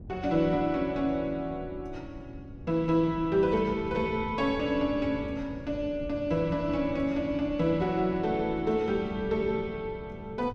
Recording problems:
wind on the microphone; below 180 Hz, SNR 15 dB

